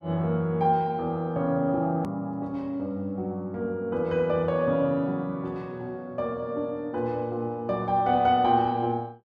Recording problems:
hard cut with a click; at 2 s

